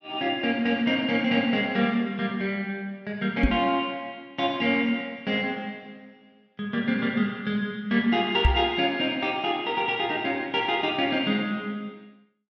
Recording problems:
microphone thump; at 3.5 s and at 8.5 s; peak +8 dB vs average level

